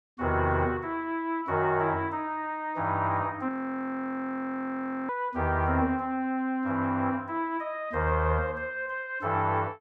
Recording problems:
audio freezing; at 3.5 s for 1.5 s

